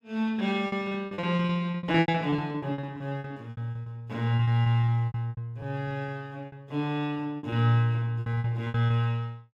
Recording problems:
lost packets; 20% of the sound replaced, filled with repeated pitch periods

